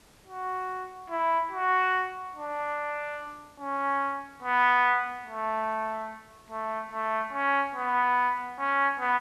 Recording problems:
hiss; slope -3 dB per octave, SNR 30 dB

